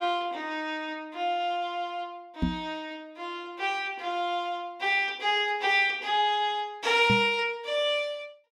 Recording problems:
microphone bump; at 2.5 s and at 7 s; peak +4 dB vs average level

